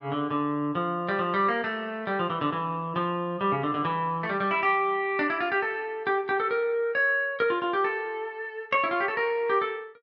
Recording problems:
none

